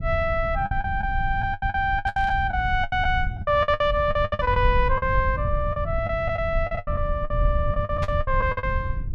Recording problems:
low-frequency rumble; below 90 Hz, SNR 5 dB
packet loss; 16% of the sound replaced, filled with the last packet
burst of static; at 2 s and at 8 s; peak -7 dB vs average level

